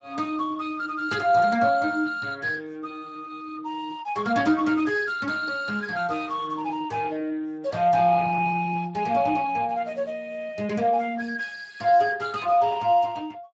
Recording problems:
codec artefacts; Speex, log-spectral distance 3 dB

